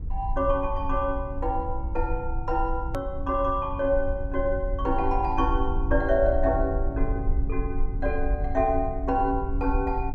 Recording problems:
rumble; below 58 Hz, SNR 4 dB
edit click; at 3 s

